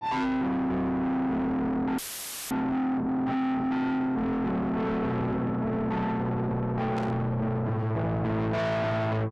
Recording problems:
distortion; soft clipping, signal-to-distortion ratio 6 dB
dropout; at 2 s for 0.5 s; filled with static
burst of static; at 7 s; peak -11 dB vs average level

